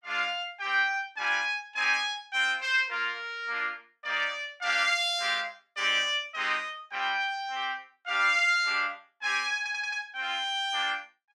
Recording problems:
stutter; at 9.5 s

